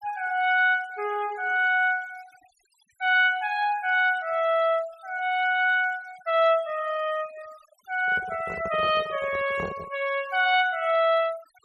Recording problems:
denoising artefacts; signal-to-artefact ratio 22 dB
handling noise; from 8 to 10 s; peak -6 dB vs average level

